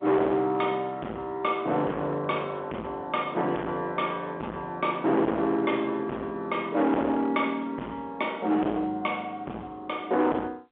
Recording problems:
phone line; 300 Hz to 3.5 kHz, G.711
distorted audio; hard clipping, signal-to-distortion ratio 7 dB

